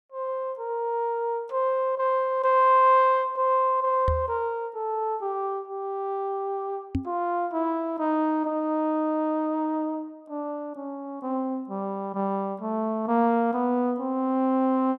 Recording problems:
knock on the microphone; at 4 s and at 7 s; peak +2 dB vs average level

